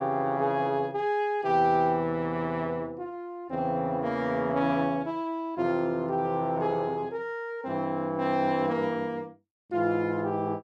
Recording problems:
none

